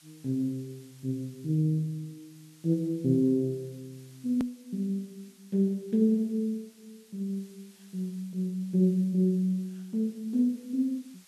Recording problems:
background hiss; slope +2 dB per octave, SNR 27 dB
edit click; at 4.5 s

